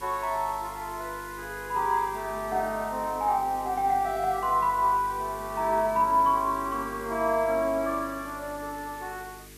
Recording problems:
mains hum; 50 Hz, harmonics up to 450 Hz, SNR 20 dB
hiss; SNR 20 dB

